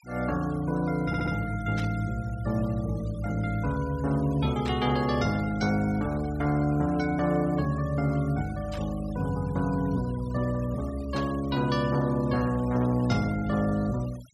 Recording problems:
denoising artefacts; signal-to-artefact ratio 21 dB
audio stuttering; at 1 s
static burst; 5 times, first at 2 s; peak -7 dB vs average level

